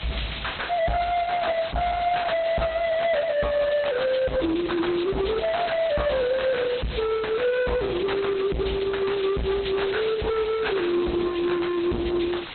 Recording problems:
low-pass filter; nothing above 4.1 kHz
lossy compression; Opus, log-spectral distance 9 dB
distortion; soft clipping, signal-to-distortion ratio 7 dB
hiss; SNR 12 dB

